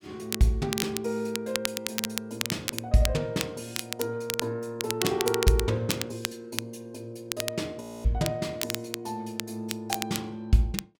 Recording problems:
crackling; vinyl, SNR 3 dB
frozen audio; at 8 s

